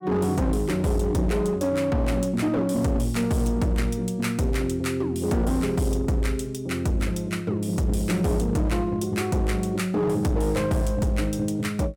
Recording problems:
distorted audio; hard clipping, uneven, signal-to-distortion ratio 10 dB

